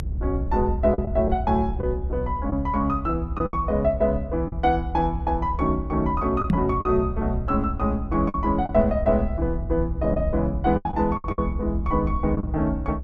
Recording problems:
low-frequency rumble; below 72 Hz, SNR 6 dB
packet loss; 5% of the sound replaced, filled with the last packet
microphone thump; at 6.5 s; peak +6 dB vs average level

